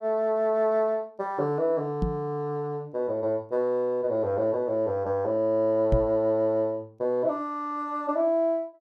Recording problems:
microphone bump; at 2 s and at 6 s; peak +4 dB vs average level

